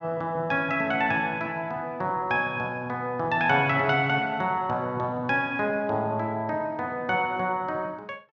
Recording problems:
none

